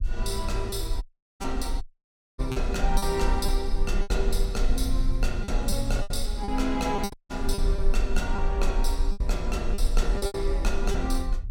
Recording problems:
rumble; below 42 Hz, strongest tone 22 Hz, SNR 0 dB
lost packets; 9% of the sound replaced, filled with repeated pitch periods
audio cutting out; at 1 s, at 2 s for 0.5 s and at 7 s

